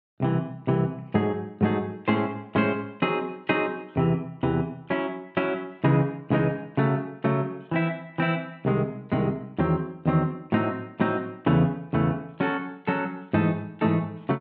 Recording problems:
none

